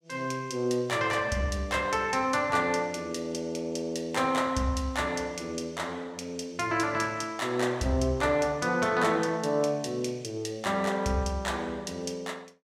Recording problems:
none

